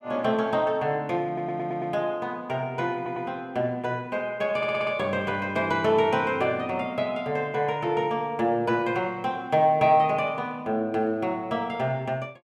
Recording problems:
audio stuttering; at 1.5 s, at 3 s and at 4.5 s

